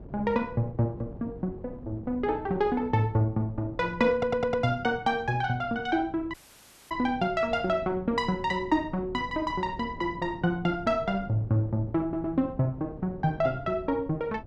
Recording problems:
wind on the microphone; below 270 Hz, SNR 17 dB
stutter; at 4 s and at 12 s
dropout; at 6.5 s for 0.5 s

